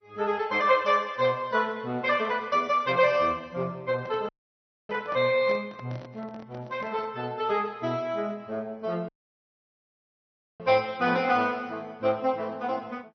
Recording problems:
lossy codec; Vorbis, then MP2, log-spectral distance 2 dB, nothing above 5.8 kHz
microphone handling noise; from 4 to 7 s; peak -9 dB vs average level
dropout; at 4.5 s for 0.5 s and at 9 s for 1.5 s

